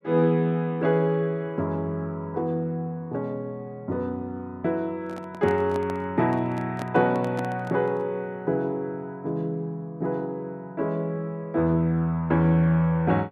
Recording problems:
microphone handling noise; from 5 to 8 s; peak -5 dB vs average level

